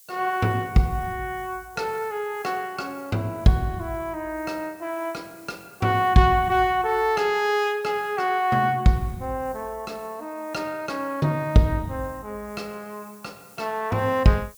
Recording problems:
hiss; SNR 25 dB

